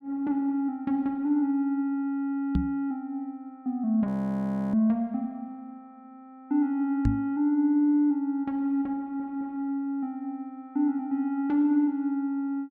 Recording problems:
microphone bump; at 2.5 s and at 7 s; peak +6 dB vs average level
audio freezing; at 4 s for 0.5 s
audio stuttering; at 9 s

